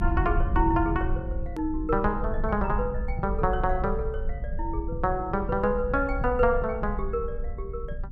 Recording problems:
low-frequency rumble; below 64 Hz, strongest tone 22 Hz, SNR 5 dB
click at an edit; at 1.5 s

